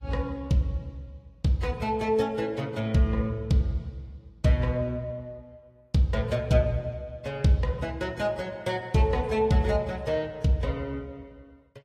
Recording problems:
lossy compression; Vorbis, then AAC, log-spectral distance 2 dB

